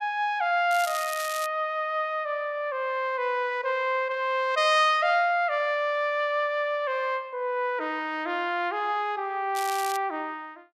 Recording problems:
crackling; at 0.5 s and at 9.5 s; loose cable, SNR 11 dB

